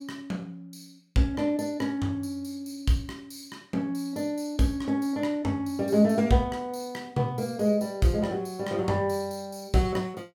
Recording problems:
none

